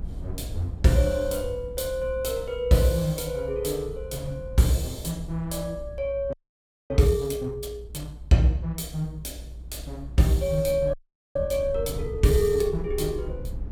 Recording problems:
low-frequency rumble; below 78 Hz, SNR 13 dB
frozen audio; at 6.5 s for 0.5 s and at 11 s

